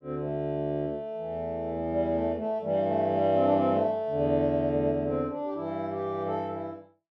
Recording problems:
none

